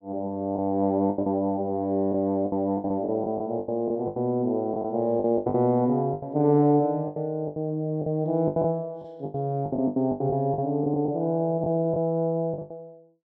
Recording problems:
packet loss; 13% of the sound replaced, filled with the last packet

